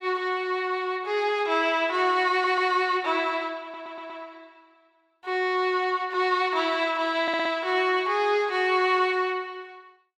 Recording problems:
stutter; at 2.5 s, at 3.5 s and at 7 s

